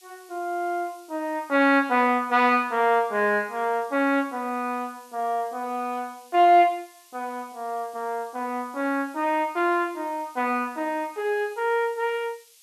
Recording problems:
background hiss; SNR 27 dB

